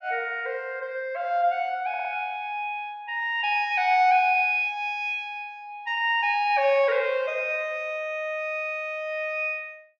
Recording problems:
audio stuttering; at 2 s

